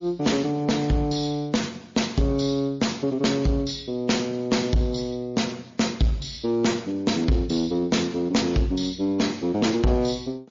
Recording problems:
codec artefacts; MP3, then MP3, log-spectral distance 3 dB, nothing above 6.7 kHz
distorted audio; soft clipping, signal-to-distortion ratio 10 dB

